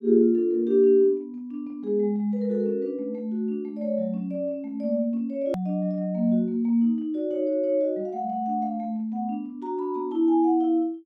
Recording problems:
click at an edit; at 5.5 s

